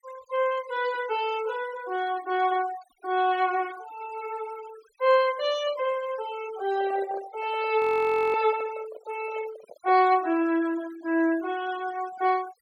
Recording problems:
denoising artefacts; signal-to-artefact ratio 19 dB
handling noise; from 6.5 to 10 s; peak -11 dB vs average level
audio freezing; at 8 s for 0.5 s

